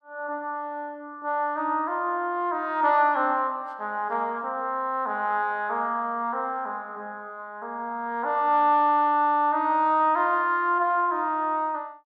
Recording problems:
none

